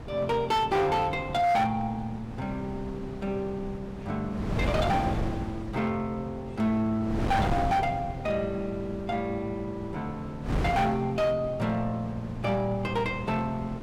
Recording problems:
distorted audio; hard clipping, signal-to-distortion ratio 11 dB
wind on the microphone; below 460 Hz, SNR 7 dB

